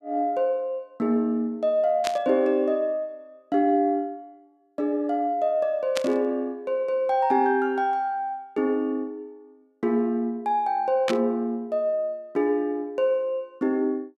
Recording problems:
burst of static; at 2 s, at 6 s and at 11 s; peak 0 dB vs average level

